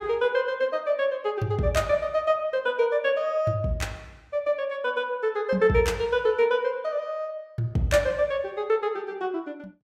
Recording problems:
none

